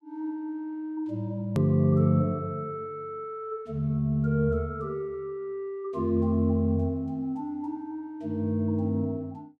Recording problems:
hard cut with a click; at 1.5 s

